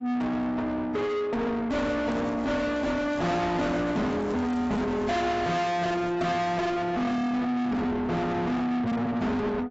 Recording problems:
lossy codec; AAC, log-spectral distance 2 dB, nothing above 7.6 kHz
distortion; soft clipping, signal-to-distortion ratio 6 dB
crackle; from 1.5 to 3.5 s, from 3.5 to 5 s and at 6 s; loose cable, SNR 28 dB

